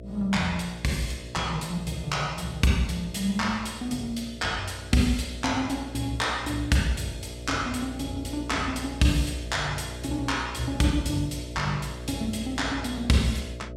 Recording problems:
hum; 60 Hz, harmonics up to 660 Hz, SNR 12 dB

